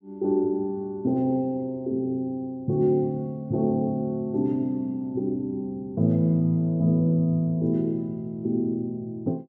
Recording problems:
none

